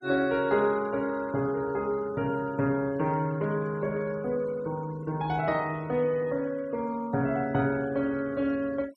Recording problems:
denoising artefacts; signal-to-artefact ratio 24 dB

